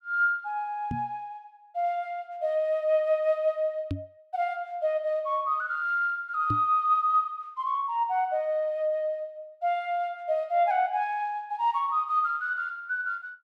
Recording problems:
microphone bump; at 1 s, at 4 s and at 6.5 s; peak 0 dB vs average level

